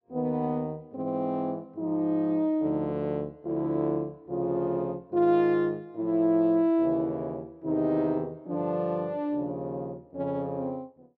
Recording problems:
none

